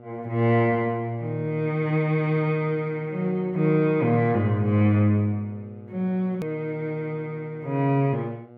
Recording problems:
hum; 60 Hz, harmonics up to 1.3 kHz, SNR 23 dB
hard cut with a click; at 6.5 s

